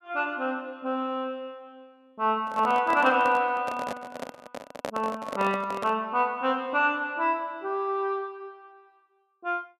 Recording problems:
handling noise; from 2.5 to 6 s; peak 0 dB vs average level

